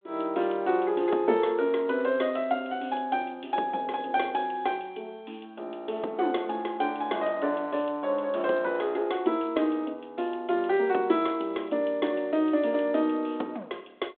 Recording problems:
telephone audio; 240 Hz to 3.6 kHz, G.726

